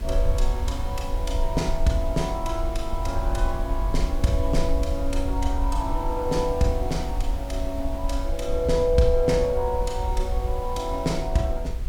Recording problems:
hiss; slope -5 dB per octave, SNR 15 dB
low-frequency rumble; below 54 Hz, SNR 3 dB

